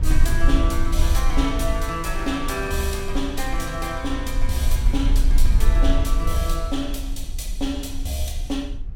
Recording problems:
low-frequency rumble; below 50 Hz, strongest tone 20 Hz, SNR -1 dB

